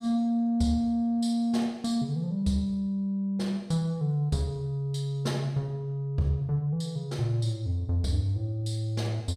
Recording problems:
none

